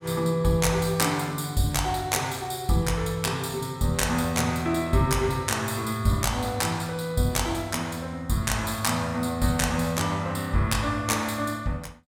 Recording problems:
none

